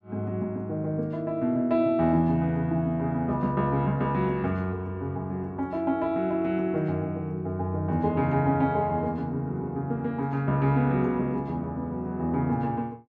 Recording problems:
none

